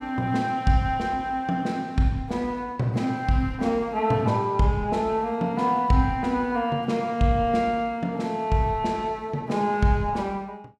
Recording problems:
none

